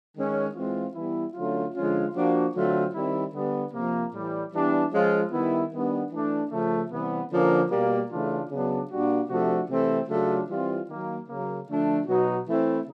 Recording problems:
none

